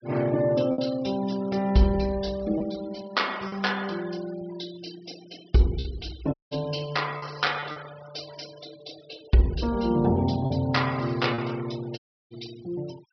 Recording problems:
treble cut off; nothing above 5.5 kHz
denoising artefacts; signal-to-artefact ratio 20 dB
lost packets; 3% of the sound replaced, filled with repeated pitch periods
audio cutting out; at 6.5 s and at 12 s

